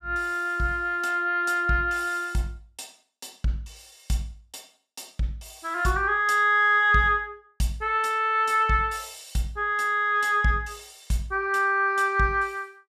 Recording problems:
none

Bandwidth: 14.5 kHz